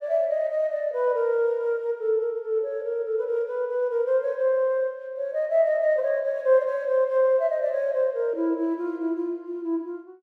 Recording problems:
none

